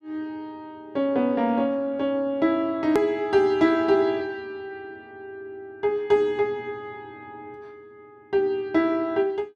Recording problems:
hard cut with a click; at 3 s

